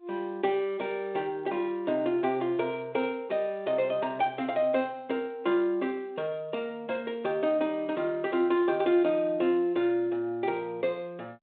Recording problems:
phone line; 190 Hz to 3.7 kHz, G.726

